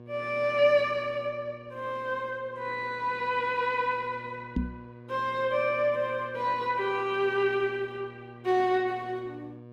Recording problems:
lossy compression; Opus, log-spectral distance 2 dB
hum; 60 Hz, harmonics up to 1.2 kHz, SNR 20 dB
microphone bump; at 4.5 s; peak +2 dB vs average level

